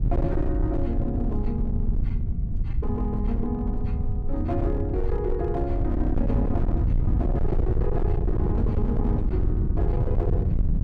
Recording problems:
distorted audio; hard clipping, uneven, signal-to-distortion ratio 8 dB
rumble; below 100 Hz, SNR -3 dB

